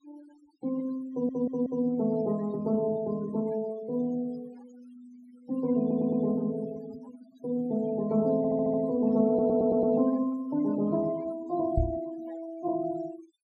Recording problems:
denoising artefacts; signal-to-artefact ratio 22 dB
stutter; 4 times, first at 1 s
microphone thump; at 12 s; peak +4 dB vs average level

